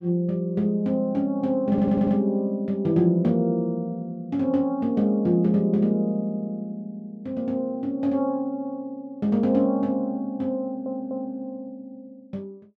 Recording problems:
stutter; at 1.5 s and at 11 s

